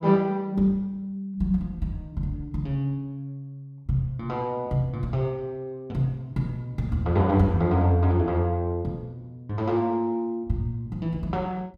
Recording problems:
none

